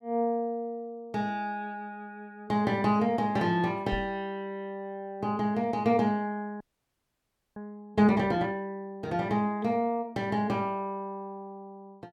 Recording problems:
microphone thump; at 4 s; peak -3 dB vs average level
frozen audio; at 6.5 s for 1 s

